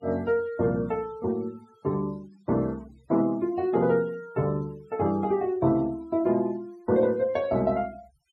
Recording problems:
denoising artefacts; signal-to-artefact ratio 25 dB

